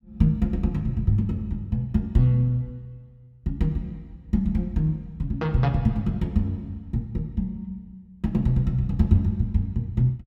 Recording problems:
none

